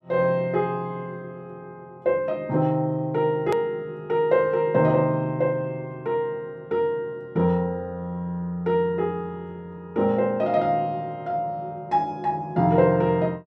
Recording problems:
edit click; at 3.5 s

